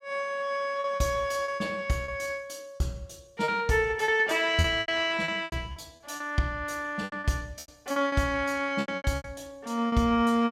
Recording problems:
lost packets; 12% of the sound replaced, filled with repeated pitch periods

